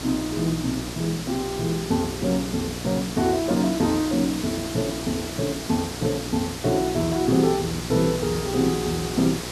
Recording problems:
hum; 60 Hz, harmonics up to 900 Hz, SNR 11 dB
background hiss; slope -2 dB per octave, SNR 8 dB

